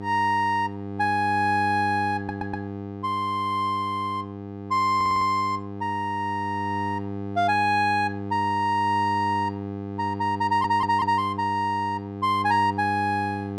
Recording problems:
hum; 50 Hz, harmonics up to 1.3 kHz, SNR 9 dB
audio stuttering; at 2 s, at 5 s and at 10 s

